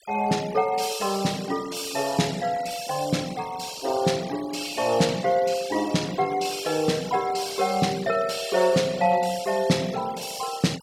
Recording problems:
denoising artefacts; signal-to-artefact ratio 17 dB

